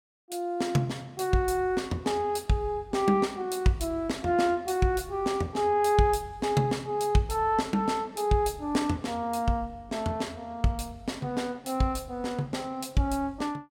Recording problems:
none

